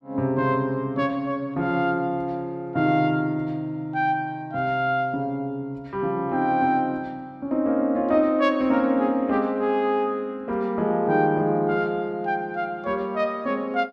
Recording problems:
none

